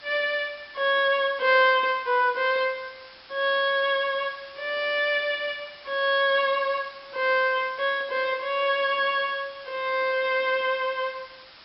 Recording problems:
treble missing; nothing above 5.4 kHz
background hiss; slope +1 dB per octave, SNR 22 dB

